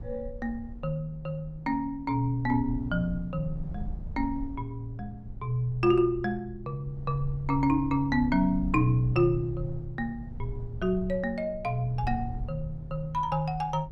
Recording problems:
low-frequency rumble; below 78 Hz, SNR 12 dB

